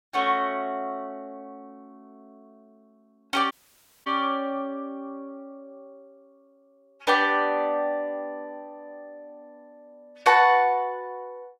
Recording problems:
audio cutting out; at 3.5 s for 0.5 s

